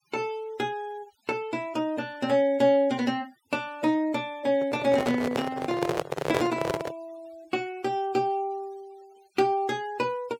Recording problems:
denoising artefacts; signal-to-artefact ratio 24 dB
handling noise; from 4.5 to 7 s; peak +4 dB vs average level

